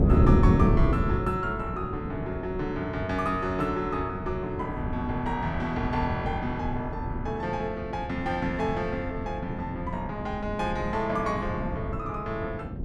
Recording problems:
wind noise; below 230 Hz, SNR 1 dB

